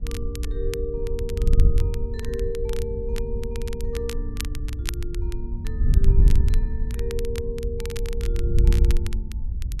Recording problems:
wind noise; below 68 Hz, SNR -8 dB
crackle; vinyl, SNR 8 dB

